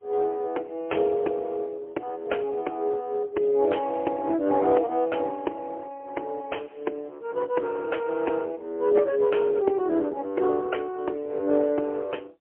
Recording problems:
phone line; 260 Hz to 3.1 kHz, AMR-NB, then MP3

